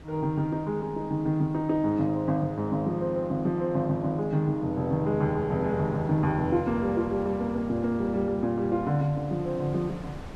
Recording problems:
wind noise; below 680 Hz, SNR 20 dB

